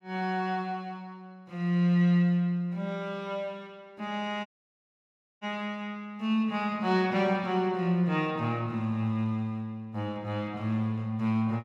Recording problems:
dropout; at 4.5 s for 1 s

